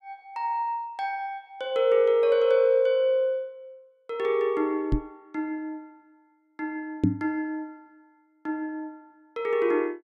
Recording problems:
knock on the microphone; at 5 s and at 7 s; peak +7 dB vs average level

